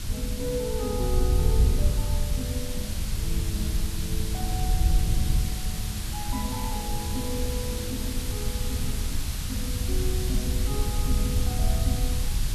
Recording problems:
background hiss; slope +1 dB per octave, SNR 0 dB
rumble; below 84 Hz, SNR 10 dB
wind on the microphone; below 82 Hz, SNR -6 dB

